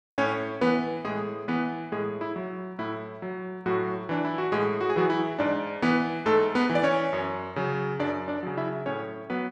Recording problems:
none

